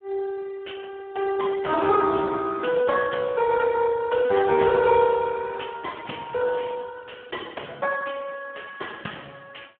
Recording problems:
telephone audio; 220 Hz to 3 kHz, Speex

